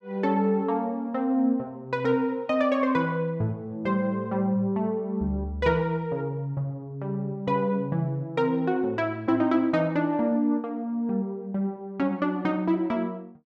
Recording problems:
none

